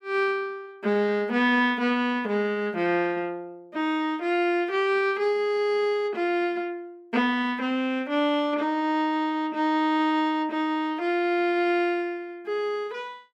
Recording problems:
none

